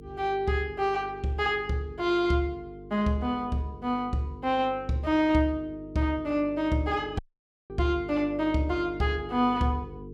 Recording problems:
hum; 50 Hz, harmonics up to 450 Hz, SNR 17 dB
audio cutting out; at 7 s for 0.5 s

